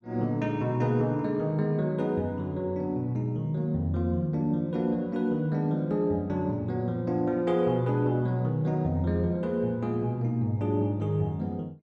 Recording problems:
none

